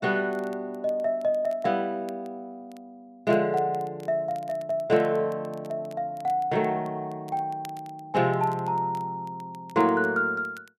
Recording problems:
crackling; vinyl, SNR 29 dB

